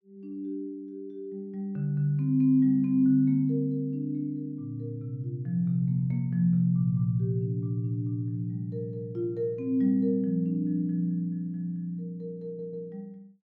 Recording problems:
audio stuttering; at 12 s

